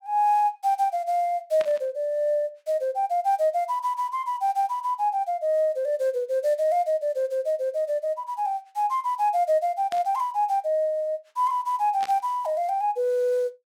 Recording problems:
static burst; at 1.5 s, at 10 s and at 12 s; peak -8 dB vs average level

